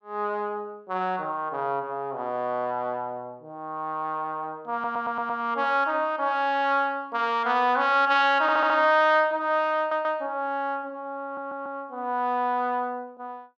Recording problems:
stutter; 4 times, first at 4.5 s

